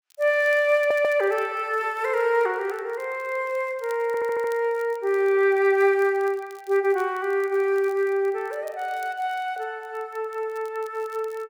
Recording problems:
crackling; vinyl, SNR 29 dB
stutter; at 1 s and at 4 s

